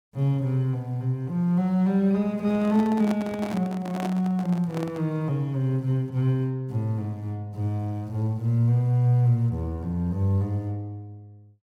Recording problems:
microphone handling noise; from 2.5 to 5 s; peak -4 dB vs average level

